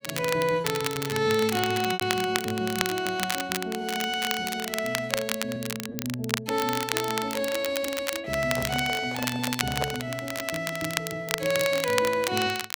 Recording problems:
crackling; vinyl, SNR 4 dB
packet loss; 2% of the sound replaced, filled with repeated pitch periods
microphone handling noise; from 8.5 to 10 s; peak +2 dB vs average level

